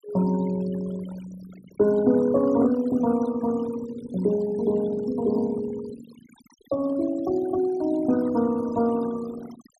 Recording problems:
denoising artefacts; signal-to-artefact ratio 19 dB

